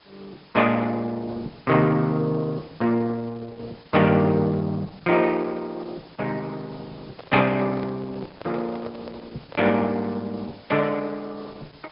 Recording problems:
treble cut off; nothing above 5 kHz
lossy compression; Opus, log-spectral distance 12 dB
hiss; slope -1 dB per octave, SNR 27 dB
microphone handling noise; from 7 to 10 s; peak -8 dB vs average level

